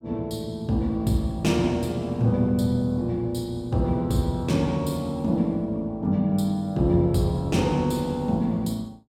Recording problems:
none

